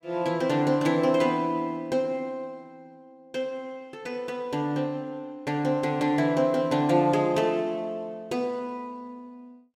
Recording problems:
none

